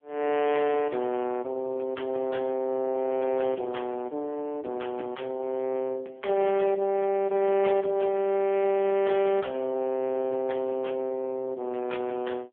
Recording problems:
telephone audio; 220 Hz to 3.3 kHz, AMR-NB

